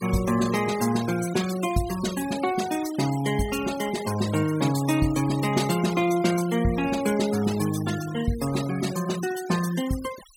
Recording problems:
denoising artefacts; signal-to-artefact ratio 13 dB

